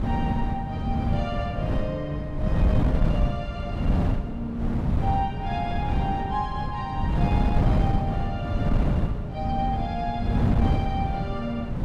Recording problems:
wind on the microphone; below 190 Hz, SNR -5 dB

